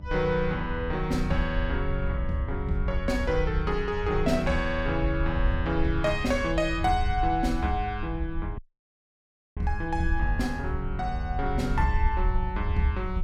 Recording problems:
hum; 50 Hz, harmonics up to 900 Hz, SNR 20 dB
rumble; below 70 Hz, SNR 4 dB
audio cutting out; at 8.5 s for 1 s

